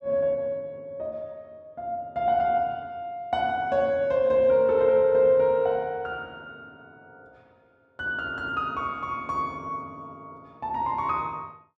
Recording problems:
none

